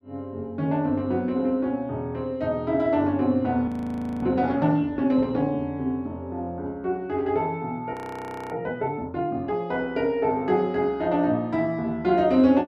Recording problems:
audio freezing; at 3.5 s for 0.5 s and at 8 s for 0.5 s

